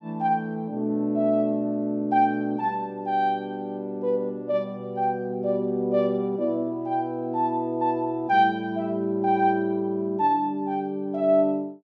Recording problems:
none

